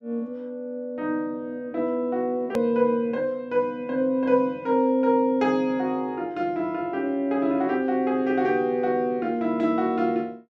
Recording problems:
click at an edit; at 2.5 s

